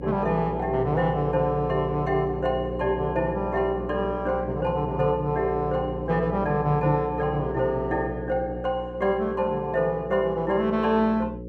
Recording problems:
electrical hum; 60 Hz, harmonics up to 540 Hz, SNR 9 dB

